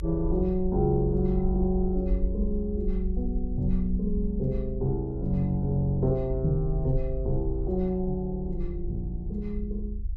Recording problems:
rumble; below 50 Hz, SNR 5 dB

